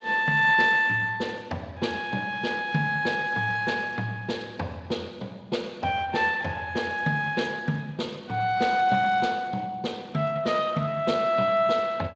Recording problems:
lossy codec; Speex, log-spectral distance 3 dB

